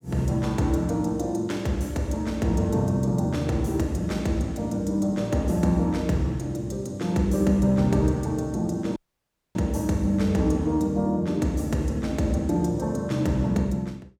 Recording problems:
dropout; at 9 s for 0.5 s

